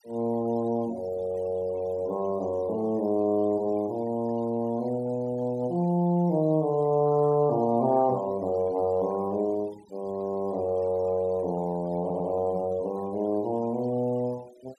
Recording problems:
denoising artefacts; signal-to-artefact ratio 26 dB
audio stuttering; at 12 s

